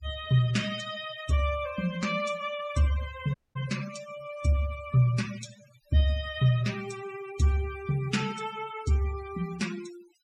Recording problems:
noise reduction artefacts; signal-to-artefact ratio 15 dB
audio cutting out; at 3.5 s

